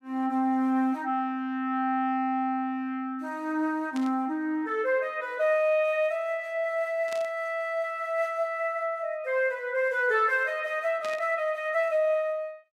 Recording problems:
static burst; at 4 s, at 7 s and at 11 s; peak -9 dB vs average level

